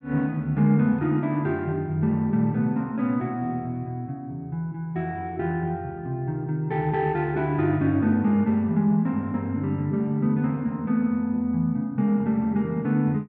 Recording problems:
none

